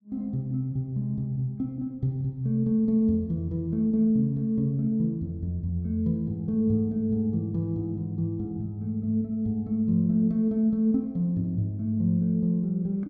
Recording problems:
none

